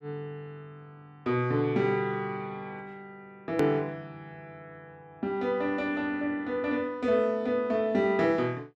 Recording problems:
edit click; at 3.5 s

